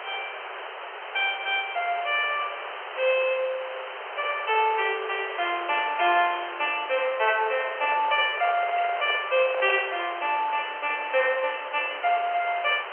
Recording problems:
phone line; 370 Hz to 3.2 kHz, G.711
background hiss; SNR 10 dB
microphone handling noise; from 7.5 to 10 s; peak -6 dB vs average level

